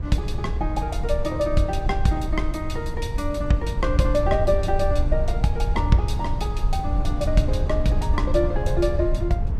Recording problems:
low-frequency rumble; below 80 Hz, SNR 1 dB

